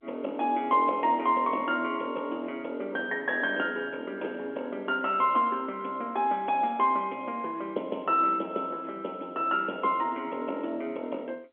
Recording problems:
telephone audio; 260 Hz to 3.8 kHz, G.711

